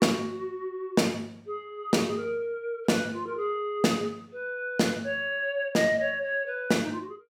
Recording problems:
none

